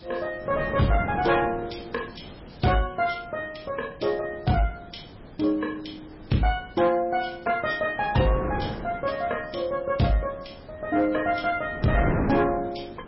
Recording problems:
codec artefacts; MP3, log-spectral distance 7 dB, nothing above 5.5 kHz
distorted audio; soft clipping, signal-to-distortion ratio 12 dB
background hiss; SNR 28 dB
wind on the microphone; below 530 Hz, SNR 9 dB

